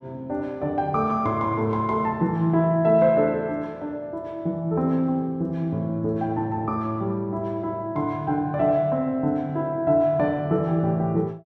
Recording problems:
none

